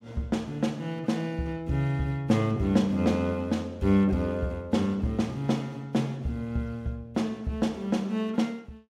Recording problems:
none

